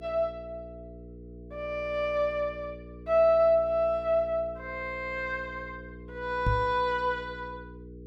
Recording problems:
hum; 60 Hz, harmonics up to 480 Hz, SNR 17 dB
knock on the microphone; at 6.5 s; peak +3 dB vs average level

